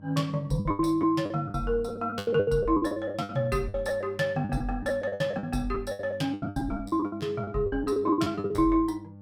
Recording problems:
electrical hum; 50 Hz, harmonics up to 900 Hz, SNR 19 dB
packet loss; 20% of the sound replaced, filled with the last packet

